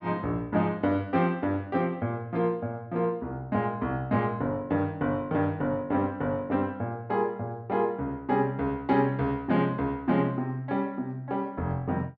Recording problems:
none

